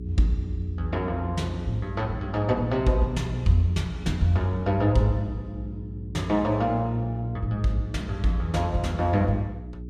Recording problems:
electrical hum; 60 Hz, harmonics up to 420 Hz, SNR 12 dB

